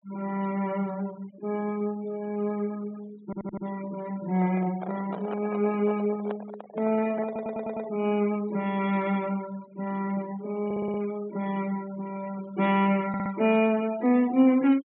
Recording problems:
treble missing; nothing above 3.9 kHz
noise reduction artefacts; signal-to-artefact ratio 21 dB
audio stuttering; 4 times, first at 3.5 s
microphone handling noise; from 4.5 to 8 s; peak -5 dB vs average level

